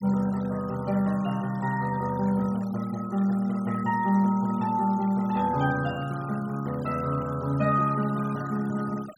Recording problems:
noise reduction artefacts; signal-to-artefact ratio 21 dB

